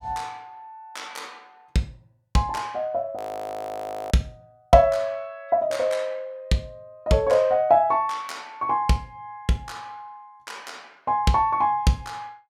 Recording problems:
frozen audio; at 3 s for 1 s

